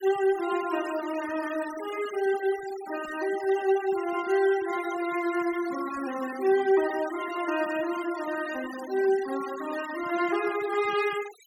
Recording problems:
noise reduction artefacts; signal-to-artefact ratio 15 dB

